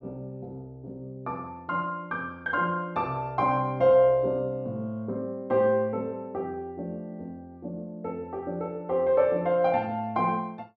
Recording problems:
none

